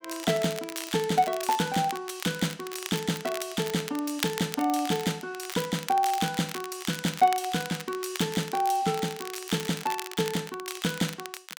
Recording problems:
crackling; vinyl, SNR 10 dB

